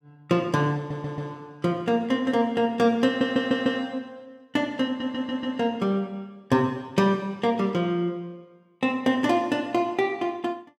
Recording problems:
stutter; at 1 s, at 3 s and at 5 s

